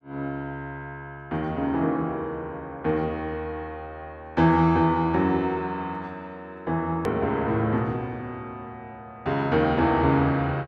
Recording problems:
hard cut with a click; at 7 s

